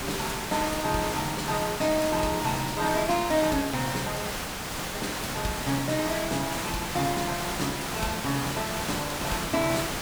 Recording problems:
hiss; slope -3 dB per octave, SNR 2 dB
dropout; at 4.5 s for 0.5 s

